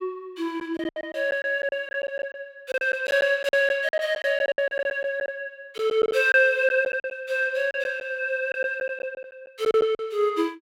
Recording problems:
lost packets; 11% of the sound replaced, filled with silence

